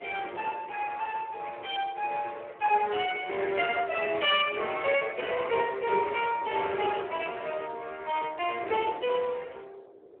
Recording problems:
telephone audio; 320 Hz to 3.3 kHz, Speex
wind noise; below 550 Hz, SNR 20 dB

